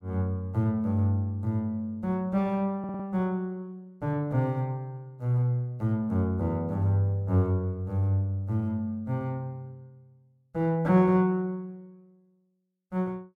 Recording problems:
audio stuttering; at 3 s

